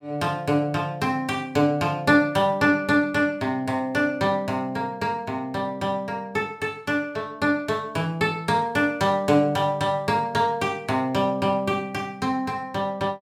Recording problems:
none

